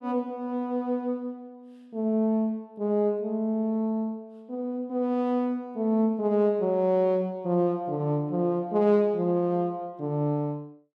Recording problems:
none

